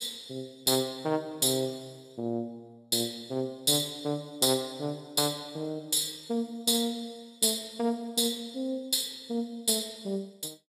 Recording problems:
none

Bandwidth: 14.5 kHz